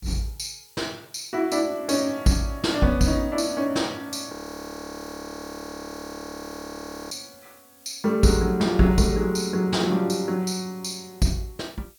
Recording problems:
background hiss; SNR 26 dB
frozen audio; at 4.5 s for 3 s

